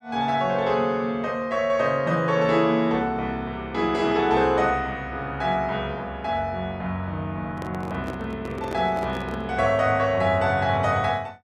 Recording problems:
handling noise; from 7.5 to 9.5 s; peak -6 dB vs average level

